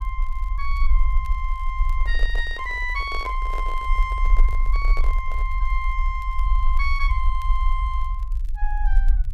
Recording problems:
rumble; below 42 Hz, strongest tone 24 Hz, SNR -4 dB
crackle; vinyl, SNR 29 dB
microphone handling noise; from 2 to 5.5 s; peak -3 dB vs average level

